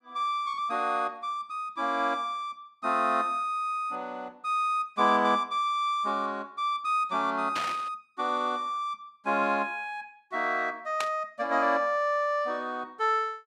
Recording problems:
burst of static; at 7.5 s and at 11 s; peak 0 dB vs average level

